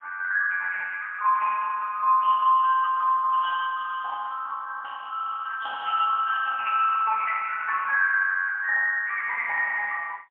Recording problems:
phone line; 500 Hz to 2.3 kHz, AMR-NB, then MP3

